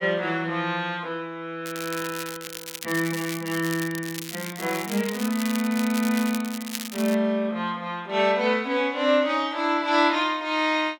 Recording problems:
crackling; from 1.5 to 7 s; loose cable, SNR 10 dB

